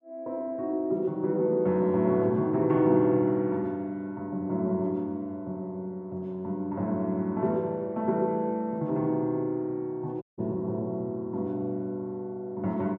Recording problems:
audio cutting out; at 10 s

